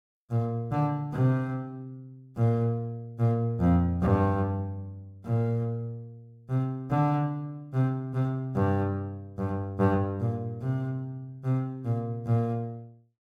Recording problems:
none

